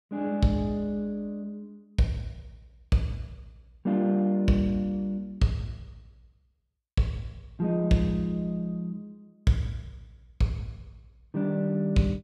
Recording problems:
none

